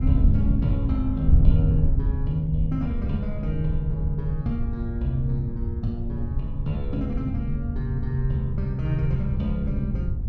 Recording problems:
wind on the microphone; below 90 Hz, SNR -1 dB

